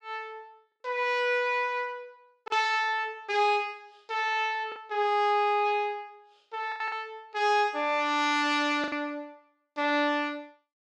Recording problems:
lost packets; 3% of the sound replaced, filled with the last packet

